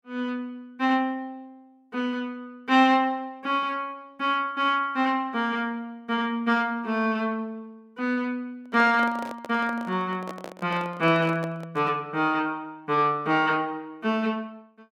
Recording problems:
microphone handling noise; from 8.5 to 12 s; peak -7 dB vs average level

